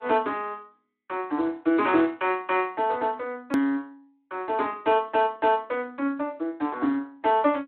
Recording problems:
telephone audio; 240 Hz to 3.6 kHz, Speex
hard cut with a click; at 3.5 s

